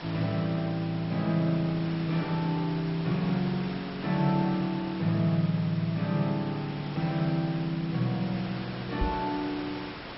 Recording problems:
codec artefacts; MP2, log-spectral distance 11 dB, nothing above 5.3 kHz
hiss; SNR 12 dB
knock on the microphone; at 9 s; peak +2 dB vs average level

